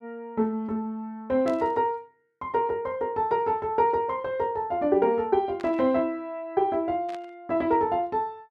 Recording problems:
static burst; at 1.5 s, at 5.5 s and at 7 s; peak -13 dB vs average level

